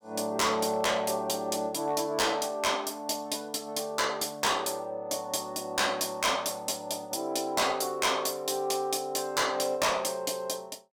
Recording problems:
distortion; hard clipping, signal-to-distortion ratio 8 dB

